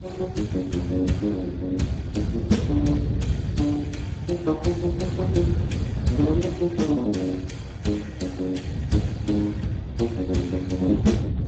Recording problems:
lossy codec; Vorbis, then Speex, log-spectral distance 3 dB, nothing above 7.6 kHz
rumble; below 150 Hz, SNR 13 dB
wind on the microphone; below 180 Hz, SNR 4 dB

